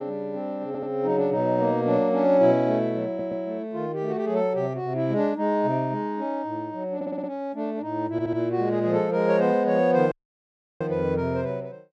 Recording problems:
audio stuttering; 4 times, first at 0.5 s
dropout; at 10 s for 0.5 s

